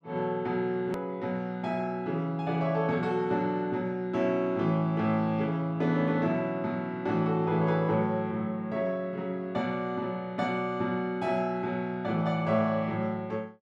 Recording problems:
hard cut with a click; at 1 s

